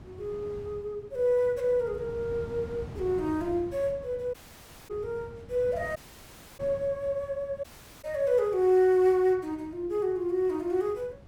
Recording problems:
wind noise; below 300 Hz, SNR 18 dB
dropout; at 4.5 s for 0.5 s, at 6 s for 0.5 s and at 7.5 s

